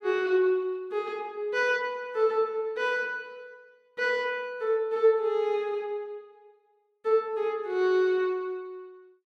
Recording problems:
none

